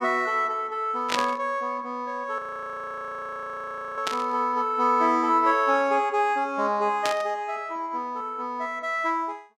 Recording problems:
burst of static; at 1 s, at 4 s and at 7 s; peak +3 dB vs average level
audio freezing; at 2.5 s for 1.5 s

